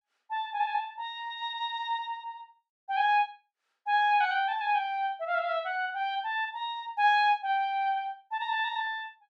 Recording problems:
none

